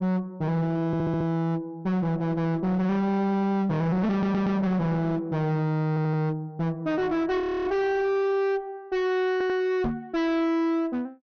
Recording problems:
treble missing; nothing above 6.4 kHz
distortion; hard clipping, uneven, signal-to-distortion ratio 6 dB
stutter; 4 times, first at 1 s
audio freezing; at 7.5 s
knock on the microphone; at 10 s; peak +1 dB vs average level

